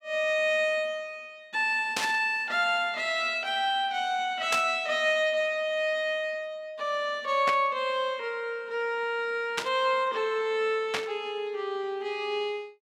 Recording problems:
static burst; 5 times, first at 2 s; peak +3 dB vs average level

